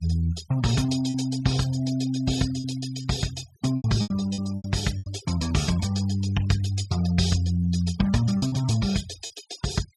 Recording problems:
denoising artefacts; signal-to-artefact ratio 17 dB
packet loss; 7% of the sound replaced, filled with repeated pitch periods

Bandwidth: 14.5 kHz